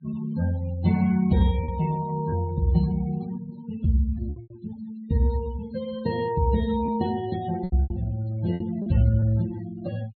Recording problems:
low-pass filter; nothing above 4.3 kHz
denoising artefacts; signal-to-artefact ratio 18 dB
packet loss; 5% of the sound replaced, filled with repeated pitch periods

